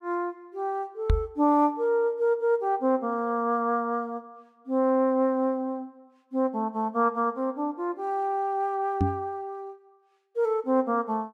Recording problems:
microphone bump; at 1 s and at 9 s; peak +6 dB vs average level

